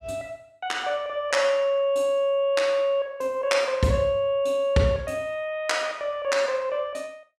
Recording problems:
none

